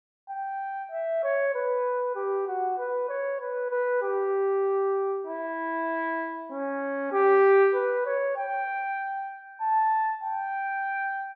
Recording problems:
none

